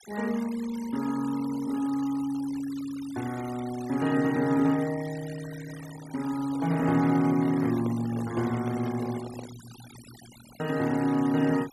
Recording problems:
noise reduction artefacts; signal-to-artefact ratio 18 dB
handling noise; from 6.5 to 9.5 s; peak -8 dB vs average level

